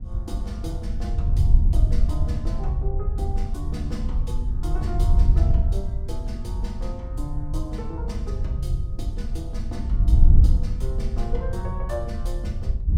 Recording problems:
wind noise; below 70 Hz, SNR -10 dB

